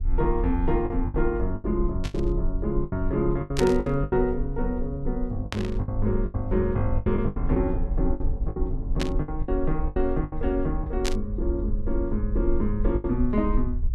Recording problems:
low-frequency rumble; below 52 Hz, SNR 4 dB
lost packets; 11% of the sound replaced, filled with the last packet
static burst; 5 times, first at 2 s; peak +2 dB vs average level

